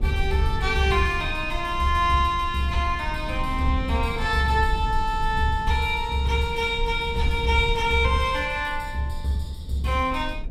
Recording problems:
low-frequency rumble; below 68 Hz, SNR 9 dB

